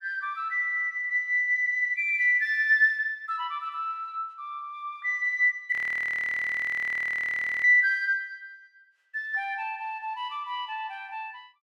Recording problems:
frozen audio; at 5.5 s for 2 s

